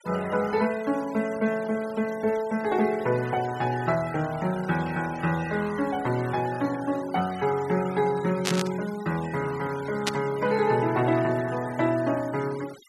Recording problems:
noise reduction artefacts; signal-to-artefact ratio 17 dB
static burst; at 8.5 s and at 10 s; peak +4 dB vs average level

